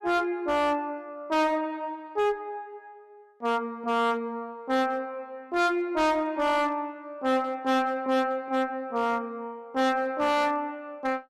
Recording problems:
distorted audio; hard clipping, uneven, signal-to-distortion ratio 7 dB

